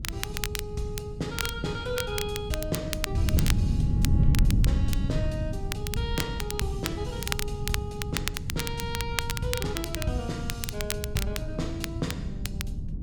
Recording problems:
wind on the microphone; below 140 Hz, SNR -3 dB
crackling; vinyl, SNR 1 dB

